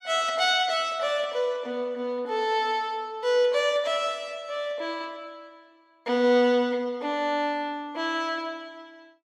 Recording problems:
none

